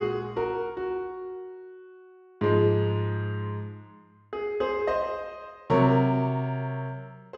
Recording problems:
none

